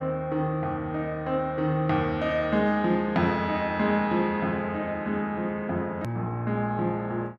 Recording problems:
click at an edit; at 6 s

